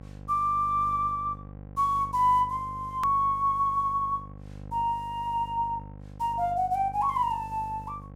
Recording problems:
electrical hum; 50 Hz, harmonics up to 1.1 kHz, SNR 16 dB
hard cut with a click; at 3 s

